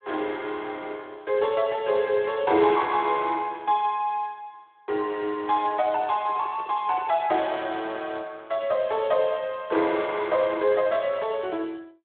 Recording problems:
telephone audio; 280 Hz to 3.7 kHz, Speex
handling noise; from 5.5 to 8 s; peak -13 dB vs average level

